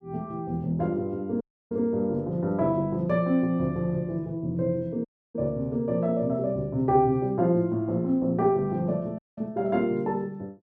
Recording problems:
dropout; at 1.5 s, at 5 s and at 9 s

